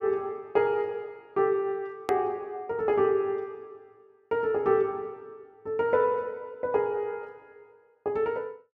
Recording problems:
hard cut with a click; at 2 s

